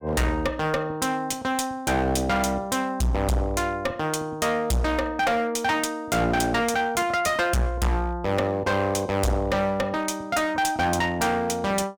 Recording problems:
distortion; hard clipping, uneven, signal-to-distortion ratio 6 dB

